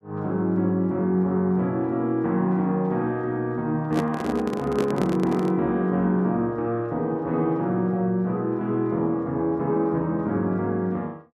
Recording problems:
microphone handling noise; from 4 to 5.5 s; peak 0 dB vs average level

